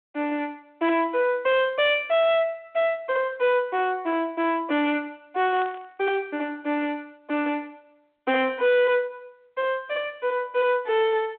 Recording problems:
phone line; 260 Hz to 3.5 kHz, G.726
distortion; hard clipping, uneven, signal-to-distortion ratio 10 dB
burst of static; at 5.5 s; peak -16 dB vs average level

